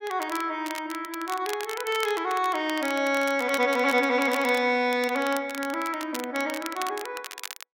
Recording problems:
crackle; vinyl, SNR 13 dB

